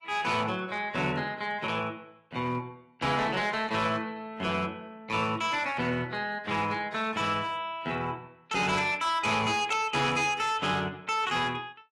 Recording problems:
lossy compression; AAC, log-spectral distance 3 dB, nothing above 11.3 kHz
distortion; hard clipping, signal-to-distortion ratio 12 dB

